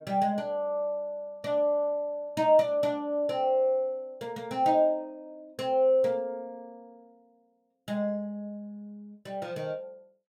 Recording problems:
none

